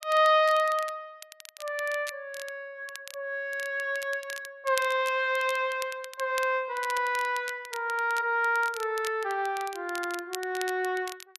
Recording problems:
crackling; vinyl, SNR 15 dB

